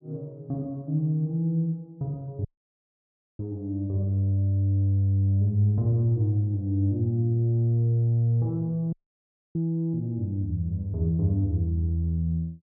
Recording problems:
audio cutting out; at 2.5 s for 1 s and at 9 s for 0.5 s

